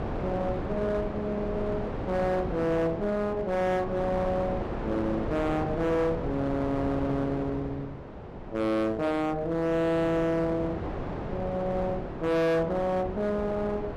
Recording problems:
distortion; hard clipping, uneven, signal-to-distortion ratio 7 dB
wind on the microphone; below 650 Hz, SNR 7 dB

